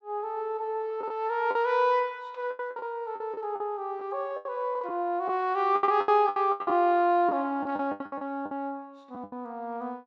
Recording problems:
lost packets; 13% of the sound replaced, filled with the last packet

